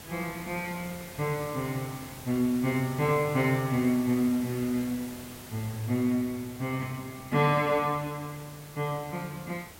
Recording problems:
background hiss; slope -3 dB per octave, SNR 15 dB

